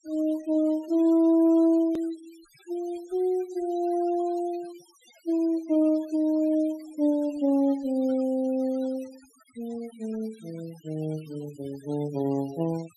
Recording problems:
denoising artefacts; signal-to-artefact ratio 26 dB
click at an edit; at 2 s

